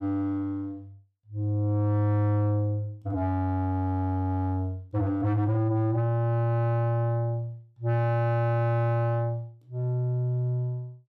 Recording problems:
distortion; soft clipping, signal-to-distortion ratio 11 dB

